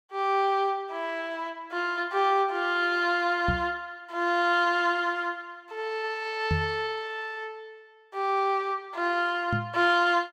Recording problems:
knock on the microphone; at 3.5 s, at 6.5 s and at 9.5 s; peak +3 dB vs average level

